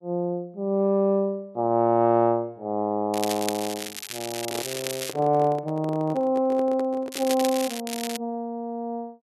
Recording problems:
crackle; from 3 to 5 s, at 7 s and at 8 s; loose cable, SNR 8 dB
handling noise; from 4.5 to 7.5 s; peak -7 dB vs average level

